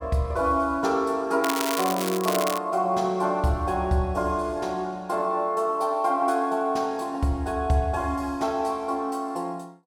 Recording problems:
crackle; from 1.5 to 2.5 s; loose cable, SNR 6 dB

